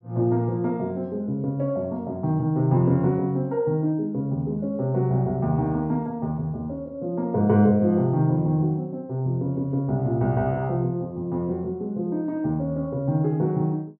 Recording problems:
none

